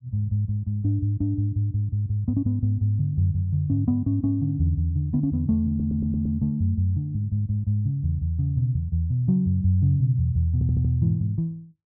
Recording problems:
stutter; at 5.5 s and at 11 s

